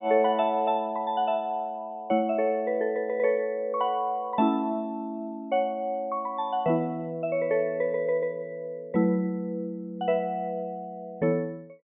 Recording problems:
treble cut off; nothing above 4 kHz

